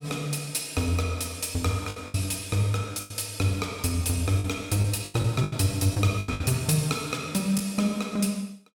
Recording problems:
packet loss; 7% of the sound replaced, filled with the last packet

